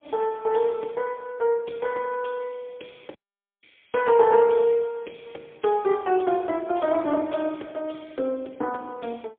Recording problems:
phone line; 280 Hz to 3.3 kHz, AMR-NB, then MP3
dropout; at 3 s

